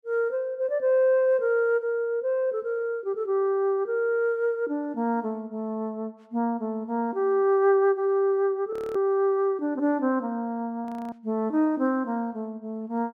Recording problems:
audio freezing; at 8.5 s and at 11 s

